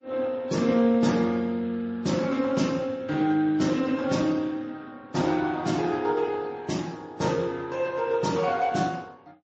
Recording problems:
codec artefacts; Speex, then MP3, log-spectral distance 3 dB, nothing above 7.3 kHz

